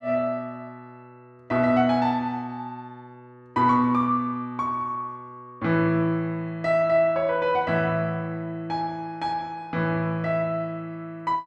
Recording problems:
none

